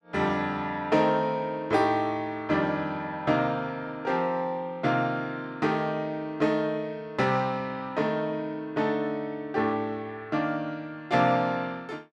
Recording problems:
none

